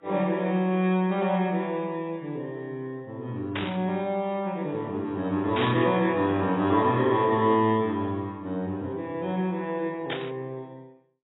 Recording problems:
codec artefacts; AAC, log-spectral distance 2 dB, nothing above 3.5 kHz
static burst; at 3.5 s, at 5.5 s and at 10 s; peak -1 dB vs average level

